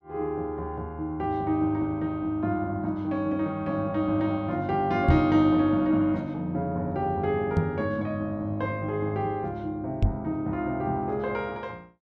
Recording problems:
microphone thump; at 5 s, at 7.5 s and at 10 s; peak +9 dB vs average level

